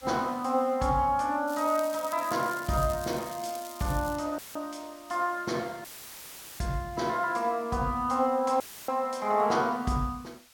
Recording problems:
hiss; SNR 24 dB
crackle; from 1.5 to 4 s; loose cable, SNR 15 dB
audio cutting out; at 4.5 s, at 6 s for 1 s and at 8.5 s; filled with static

